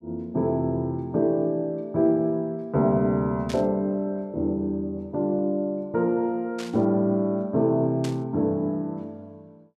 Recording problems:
burst of static; at 3.5 s, at 6.5 s and at 8 s; peak -8 dB vs average level

